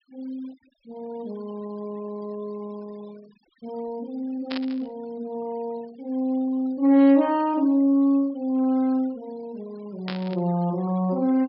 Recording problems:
low-pass filter; nothing above 5.3 kHz
denoising artefacts; signal-to-artefact ratio 26 dB
static burst; at 4.5 s and at 10 s; peak -4 dB vs average level

